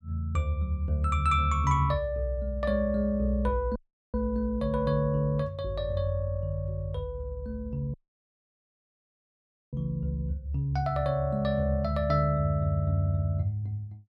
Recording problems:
dropout; at 4 s and at 8 s for 2 s

